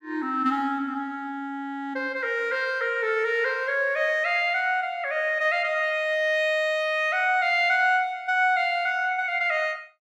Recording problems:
none

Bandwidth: 15 kHz